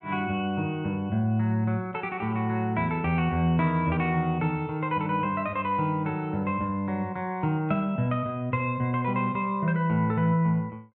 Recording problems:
none

